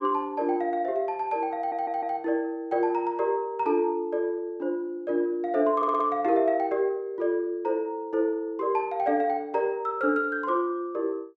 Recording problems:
audio stuttering; at 1.5 s and at 6 s

